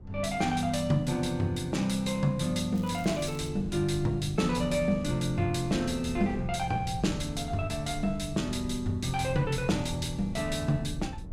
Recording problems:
wind noise; below 110 Hz, SNR 14 dB
crackle; at 3 s; loose cable, SNR 23 dB

